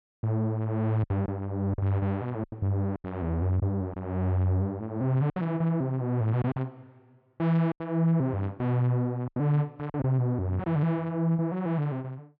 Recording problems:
lost packets; 6% of the sound replaced, filled with silence

